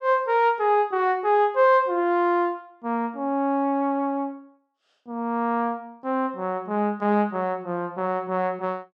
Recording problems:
none

